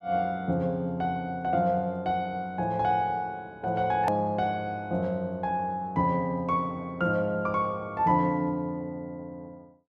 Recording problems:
edit click; at 4 s

